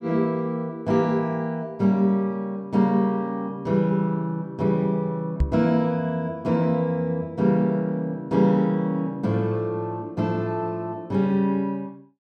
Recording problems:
knock on the microphone; at 5.5 s; peak +5 dB vs average level

